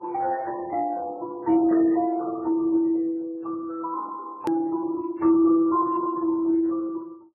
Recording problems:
lossy codec; Speex, then MP3, log-spectral distance 2 dB, nothing above 13.1 kHz
edit click; at 4.5 s

